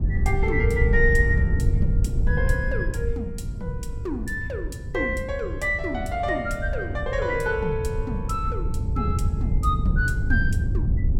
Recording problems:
wind on the microphone; below 100 Hz, SNR -1 dB

